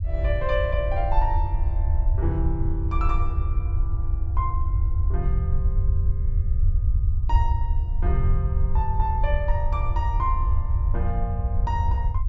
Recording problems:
treble missing; nothing above 8 kHz
low-frequency rumble; below 80 Hz, SNR -6 dB

